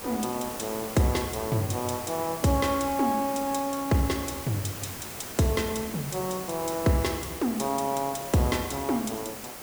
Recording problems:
hiss; slope -4 dB per octave, SNR 9 dB

